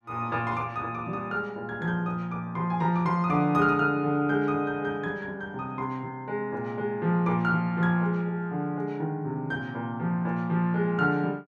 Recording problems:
none

